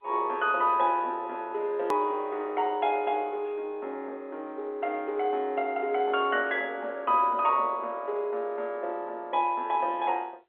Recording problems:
phone line; 300 Hz to 3.8 kHz, G.711
click at an edit; at 2 s

